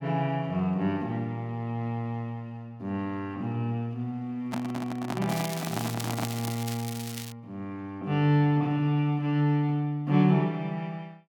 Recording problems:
microphone handling noise; from 4.5 to 6.5 s; peak 0 dB vs average level
crackle; from 5.5 to 7.5 s; loose cable, SNR 10 dB

